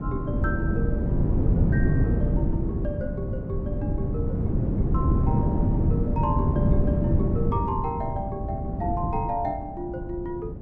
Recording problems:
hum; 50 Hz, harmonics up to 300 Hz, SNR 17 dB
wind noise; below 200 Hz, SNR -7 dB

